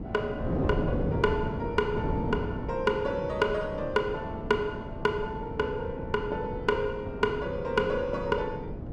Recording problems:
wind on the microphone; below 350 Hz, SNR 5 dB

